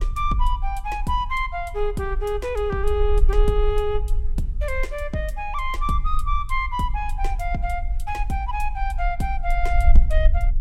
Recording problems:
rumble; below 50 Hz, strongest tone 18 Hz, SNR 0 dB

